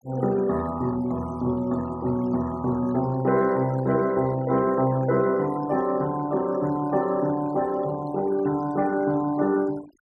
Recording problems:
denoising artefacts; signal-to-artefact ratio 21 dB

